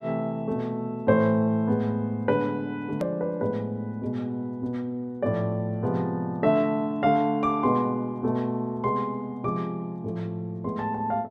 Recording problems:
hard cut with a click; at 3 s

